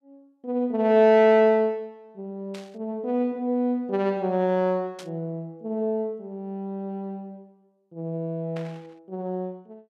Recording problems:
burst of static; at 2.5 s, at 5 s and at 8.5 s; peak -13 dB vs average level

